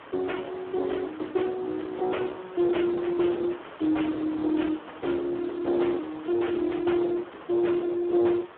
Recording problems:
telephone audio; 280 Hz to 3.4 kHz, Speex
distorted audio; soft clipping, signal-to-distortion ratio 13 dB
hiss; SNR 18 dB

